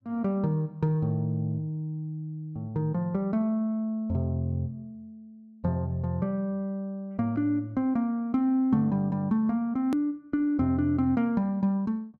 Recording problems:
hard cut with a click; at 10 s

